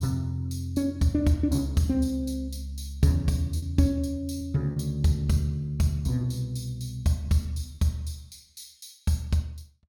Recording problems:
packet loss; 2% of the sound replaced, filled with repeated pitch periods

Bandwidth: 17.5 kHz